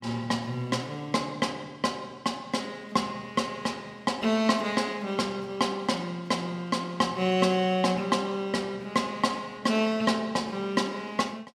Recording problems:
none

